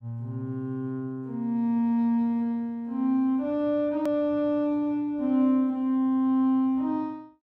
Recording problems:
edit click; at 4 s

